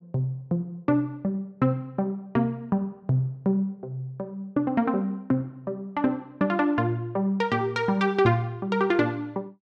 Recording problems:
none

